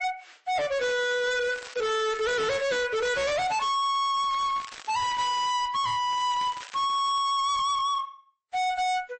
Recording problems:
lossy compression; MP3, then AAC, log-spectral distance 4 dB, nothing above 8 kHz
distortion; hard clipping, signal-to-distortion ratio 6 dB
crackling; from 1 to 3 s, from 4 to 5.5 s and from 6 to 7 s; loose cable, SNR 18 dB

